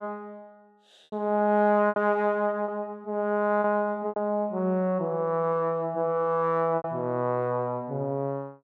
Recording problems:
packet loss; 4% of the sound replaced, filled with repeated pitch periods

